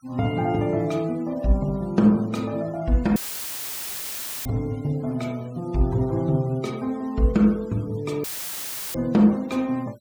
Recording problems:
denoising artefacts; signal-to-artefact ratio 27 dB
dropout; at 3 s for 1.5 s and at 8 s for 0.5 s; filled with static

